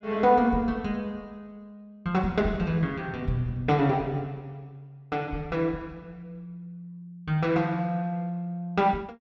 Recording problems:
none

